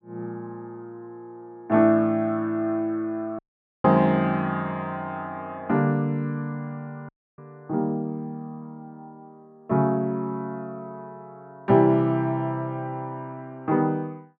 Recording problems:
audio cutting out; at 3.5 s and at 7 s

